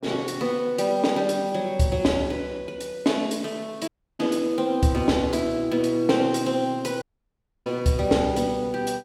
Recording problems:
audio cutting out; at 4 s and at 7 s for 0.5 s

